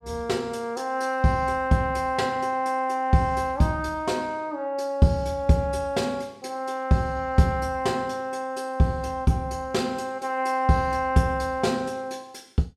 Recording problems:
none

